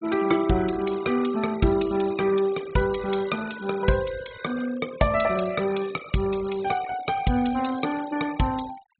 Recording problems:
treble missing; nothing above 4 kHz
denoising artefacts; signal-to-artefact ratio 17 dB

